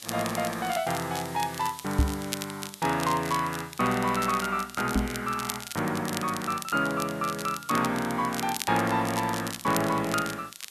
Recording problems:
hiss; slope +2 dB per octave, SNR 19 dB
crackling; vinyl, SNR 10 dB
knock on the microphone; at 2 s and at 5 s; peak +8 dB vs average level

